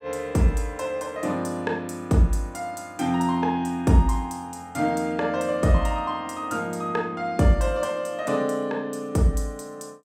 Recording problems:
none

